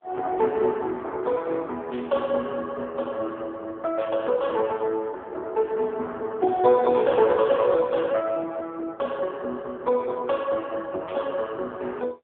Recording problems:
phone line; 170 Hz to 3.4 kHz, AMR-NB
burst of static; 4 times, first at 2 s; peak -13 dB vs average level

